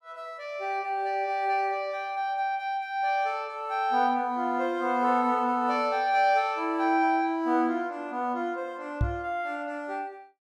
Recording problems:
microphone thump; at 9 s; peak +4 dB vs average level

